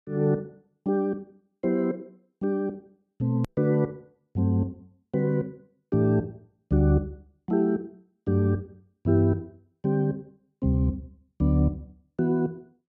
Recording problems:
click at an edit; at 3.5 s

